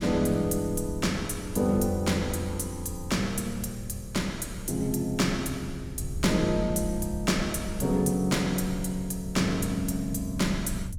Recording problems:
low-frequency rumble; below 110 Hz, SNR 11 dB

